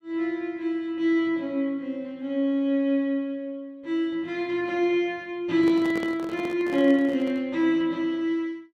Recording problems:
handling noise; from 5.5 to 7.5 s; peak -5 dB vs average level

